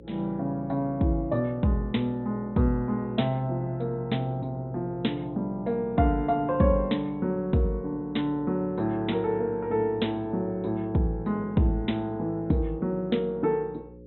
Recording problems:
treble missing; nothing above 3.9 kHz
electrical hum; 60 Hz, harmonics up to 540 Hz, SNR 20 dB

